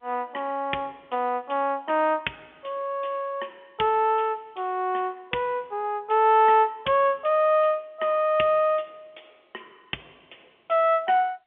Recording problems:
phone line; 280 Hz to 3.3 kHz, G.711

